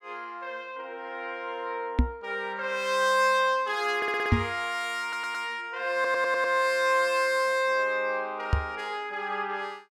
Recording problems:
microphone thump; at 2 s, at 4.5 s and at 8.5 s; peak +8 dB vs average level
audio stuttering; at 4 s, at 5 s and at 6 s

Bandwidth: 16.5 kHz